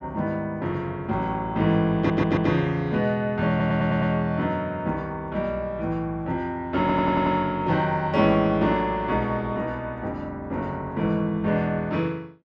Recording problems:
stutter; at 2 s, at 3.5 s and at 7 s

